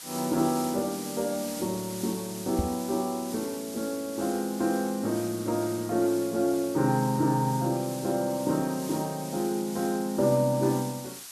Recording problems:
background hiss; slope +2 dB per octave, SNR 12 dB
microphone bump; at 2.5 s; peak +3 dB vs average level

